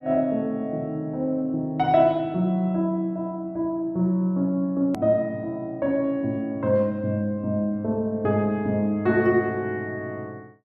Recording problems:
hard cut with a click; at 5 s

